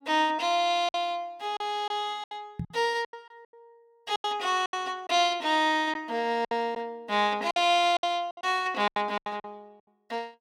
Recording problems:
lost packets; 10% of the sound replaced, filled with silence
microphone thump; at 2.5 s; peak -3 dB vs average level

